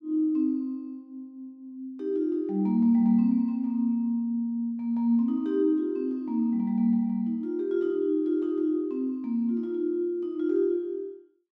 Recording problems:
none

